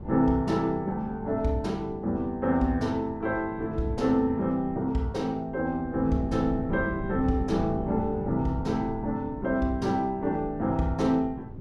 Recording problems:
wind on the microphone; below 230 Hz, SNR 12 dB

